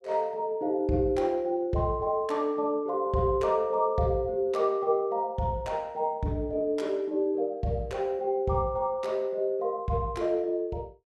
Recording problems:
none

